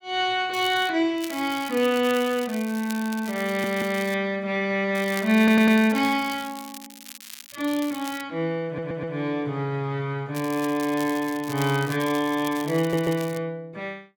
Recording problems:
crackle; 4 times, first at 0.5 s; loose cable, SNR 16 dB
stutter; 4 times, first at 3.5 s

